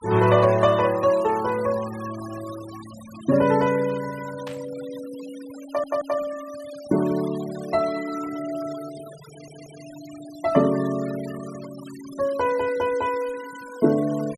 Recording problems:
noise reduction artefacts; signal-to-artefact ratio 18 dB
burst of static; at 4.5 s; peak -11 dB vs average level
audio stuttering; at 5.5 s and at 9.5 s

